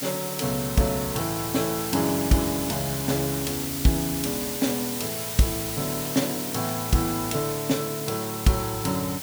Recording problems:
hiss; slope 0 dB per octave, SNR 4 dB

